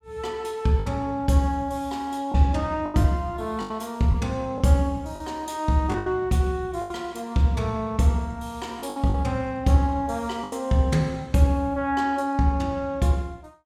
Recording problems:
packet loss; 5% of the sound replaced, filled with the last packet

